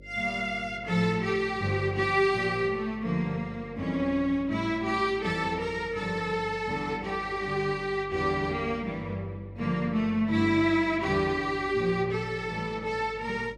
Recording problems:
electrical hum; 50 Hz, harmonics up to 600 Hz, SNR 22 dB

